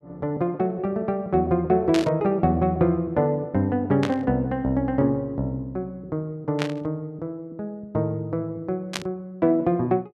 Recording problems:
static burst; 4 times, first at 2 s; peak +1 dB vs average level

